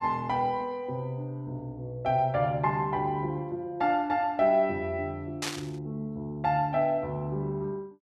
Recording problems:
burst of static; at 5.5 s; peak +1 dB vs average level

